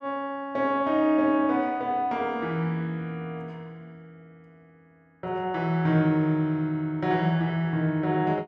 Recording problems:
none

